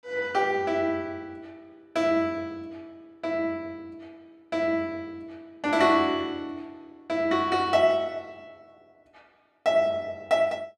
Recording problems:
none

